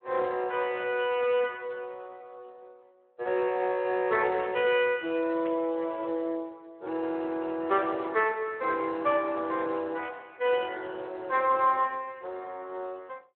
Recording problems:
phone line; 280 Hz to 3.1 kHz, Speex
static burst; at 5.5 s and at 10 s; peak -12 dB vs average level

